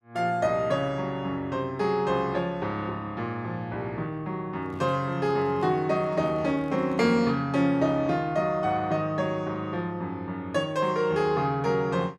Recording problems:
microphone handling noise; from 4.5 to 7.5 s; peak -12 dB vs average level

